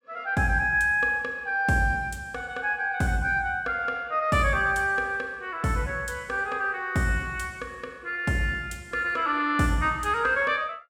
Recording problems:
none

